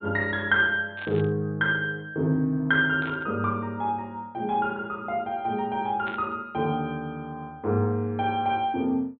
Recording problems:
treble cut off; nothing above 4 kHz
burst of static; at 1 s, at 3 s and at 6 s; peak -10 dB vs average level

